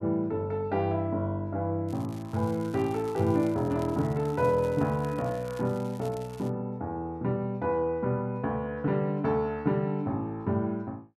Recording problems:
crackling; from 2 to 6.5 s; loose cable, SNR 23 dB

